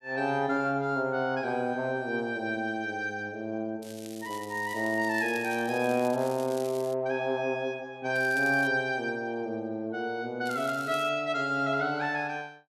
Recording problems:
crackle; from 4 to 7 s, at 8 s and at 10 s; loose cable, SNR 18 dB

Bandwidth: 13 kHz